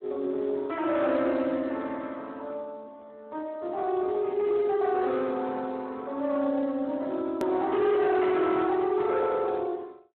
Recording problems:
telephone audio; 240 Hz to 2.9 kHz, Speex
distortion; hard clipping, signal-to-distortion ratio 11 dB
click at an edit; at 7.5 s

